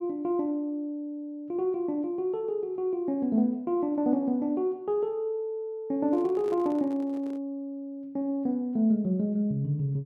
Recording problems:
handling noise; from 6 to 7.5 s; peak -10 dB vs average level

